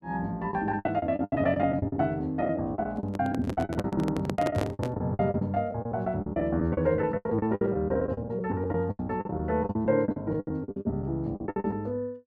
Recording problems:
lost packets; 19% of the sound replaced, filled with the last packet
handling noise; from 3 to 5 s; peak +2 dB vs average level

